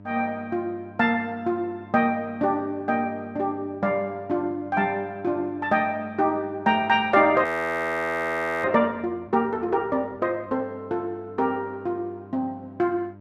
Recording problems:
hum; 50 Hz, harmonics up to 1 kHz, SNR 21 dB
audio freezing; at 7.5 s for 1 s

